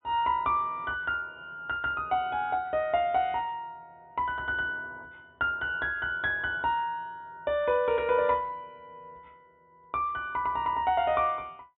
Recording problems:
treble missing; nothing above 3.7 kHz

